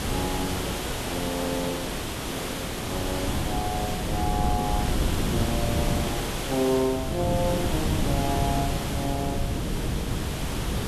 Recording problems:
hiss; slope -4 dB per octave, SNR 1 dB
wind on the microphone; below 220 Hz, SNR 0 dB

